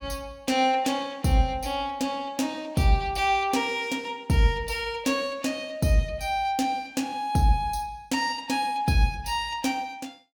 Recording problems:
none

